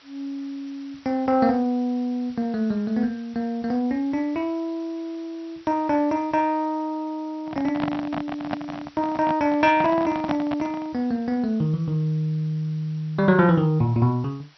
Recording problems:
codec artefacts; G.722, then MP2, log-spectral distance 3 dB, nothing above 5.8 kHz
background hiss; SNR 27 dB
handling noise; from 7.5 to 11 s; peak 0 dB vs average level

